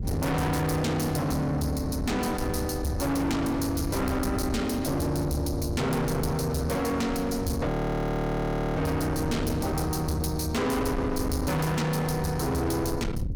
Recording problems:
distorted audio; soft clipping, signal-to-distortion ratio 6 dB
rumble; below 270 Hz, SNR 7 dB
frozen audio; at 7.5 s for 1 s

